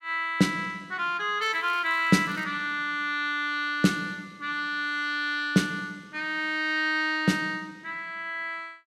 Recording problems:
crackle; from 1.5 to 2.5 s; loose cable, SNR 27 dB

